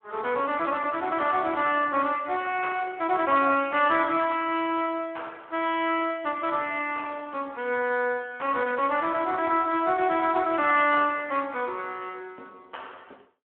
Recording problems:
phone line; 220 Hz to 3.4 kHz, Speex

